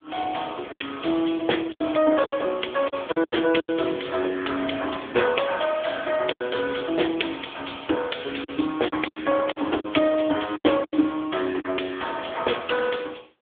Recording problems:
phone line; 260 Hz to 3.5 kHz, AMR-NB
packet loss; 8% of the sound replaced, filled with silence

